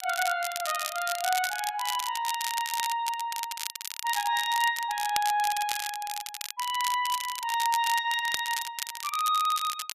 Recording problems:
crackling; vinyl, SNR 6 dB

